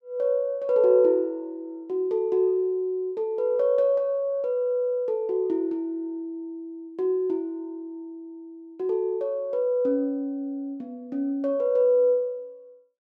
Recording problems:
none

